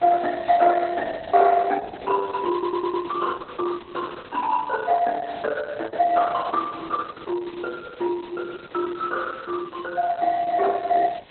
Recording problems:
codec artefacts; Opus, log-spectral distance 6 dB, nothing above 4 kHz
hiss; SNR 21 dB
audio stuttering; at 2.5 s

